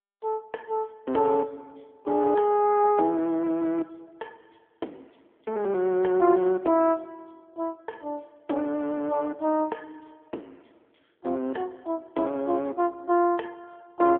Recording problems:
phone line; 220 Hz to 3.1 kHz, AMR-NB

